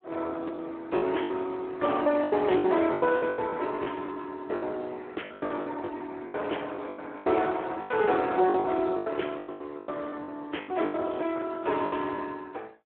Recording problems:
phone line; 260 Hz to 3.3 kHz, Speex
packet loss; 15% of the sound replaced, filled with the last packet

